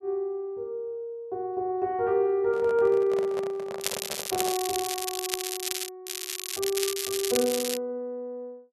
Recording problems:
handling noise; from 2.5 to 4.5 s; peak -4 dB vs average level
crackling; from 4 to 6 s and from 6 to 8 s; loose cable, SNR 3 dB

